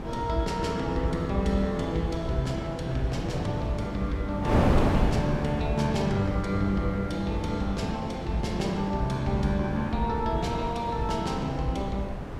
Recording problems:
wind noise; below 450 Hz, SNR 4 dB

